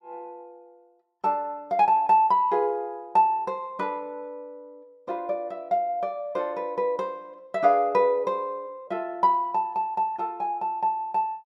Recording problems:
none

